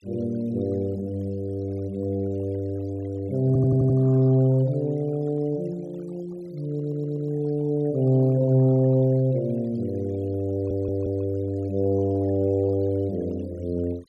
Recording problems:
noise reduction artefacts; signal-to-artefact ratio 28 dB
stutter; at 3.5 s, at 6.5 s and at 11 s

